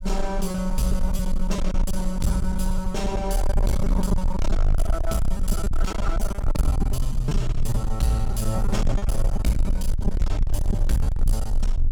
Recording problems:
distorted audio; hard clipping, signal-to-distortion ratio 7 dB
rumble; below 48 Hz, strongest tone 20 Hz, SNR 0 dB
lost packets; 10% of the sound replaced, filled with repeated pitch periods

